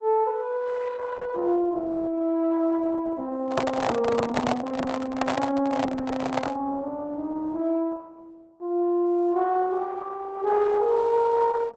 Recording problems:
lossy compression; Opus, log-spectral distance 3 dB, nothing above 7.8 kHz
microphone handling noise; from 3.5 to 6.5 s; peak +5 dB vs average level

